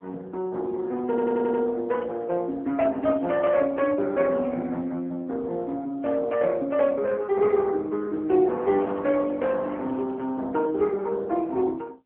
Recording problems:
telephone audio; 220 Hz to 3.4 kHz, AMR-NB
stutter; at 1 s
microphone handling noise; from 8.5 to 10 s; peak -15 dB vs average level

